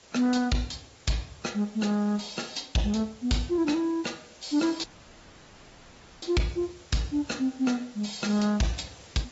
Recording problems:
low-pass filter; nothing above 7.6 kHz
codec artefacts; AAC, log-spectral distance 8 dB
distortion; soft clipping, signal-to-distortion ratio 11 dB
hiss; slope -2 dB per octave, SNR 22 dB
audio cutting out; at 5 s for 1.5 s

